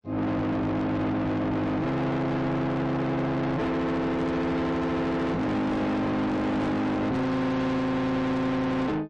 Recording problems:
lossy compression; MP3, then AAC, log-spectral distance 2 dB
distorted audio; soft clipping, signal-to-distortion ratio 6 dB

